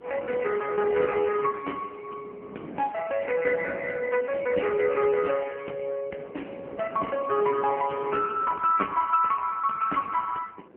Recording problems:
telephone audio; 280 Hz to 3 kHz, AMR-NB
wind on the microphone; below 520 Hz, SNR 18 dB

